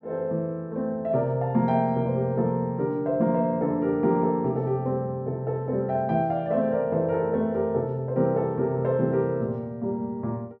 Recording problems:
none

